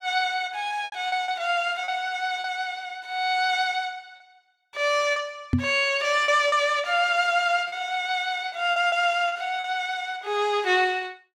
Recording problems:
packet loss; 6% of the sound replaced, filled with repeated pitch periods
microphone bump; at 5.5 s; peak +5 dB vs average level

